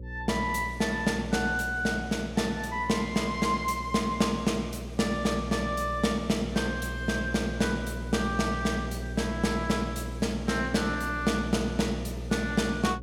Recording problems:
electrical hum; 60 Hz, harmonics up to 540 Hz, SNR 9 dB

